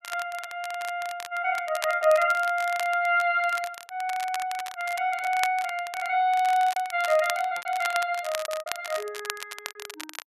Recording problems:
crackling; vinyl, SNR 12 dB
packet loss; 7% of the sound replaced, filled with repeated pitch periods

